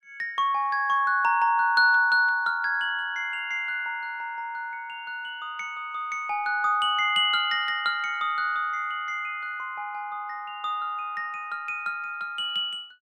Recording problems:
none

